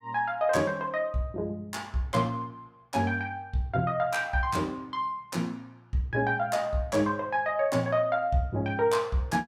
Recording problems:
none

